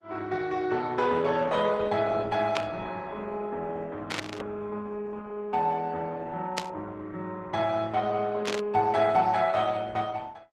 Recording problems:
codec artefacts; Opus, log-spectral distance 3 dB, nothing above 11.6 kHz
burst of static; 4 times, first at 2.5 s; peak +2 dB vs average level

